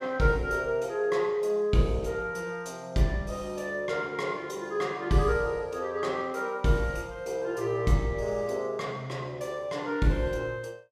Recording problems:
none

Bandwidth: 15 kHz